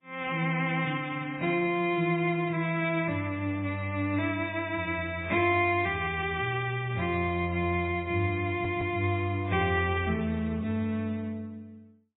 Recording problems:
codec artefacts; MP3, then AAC, log-spectral distance 3 dB, nothing above 3.6 kHz
audio stuttering; at 8.5 s

